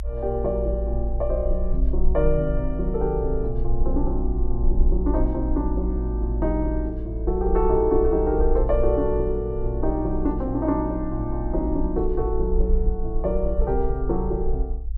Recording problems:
low-frequency rumble; below 54 Hz, SNR 3 dB

